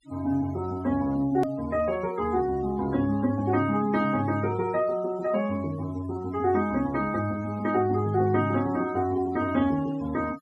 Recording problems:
noise reduction artefacts; signal-to-artefact ratio 20 dB
click at an edit; at 1.5 s

